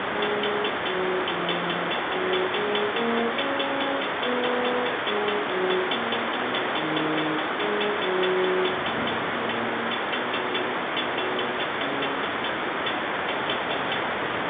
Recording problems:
phone line; 220 Hz to 3.6 kHz, G.711
hiss; SNR -3 dB
wind noise; below 400 Hz, SNR 15 dB

